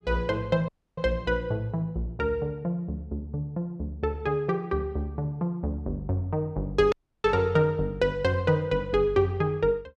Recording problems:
audio cutting out; at 0.5 s and at 7 s

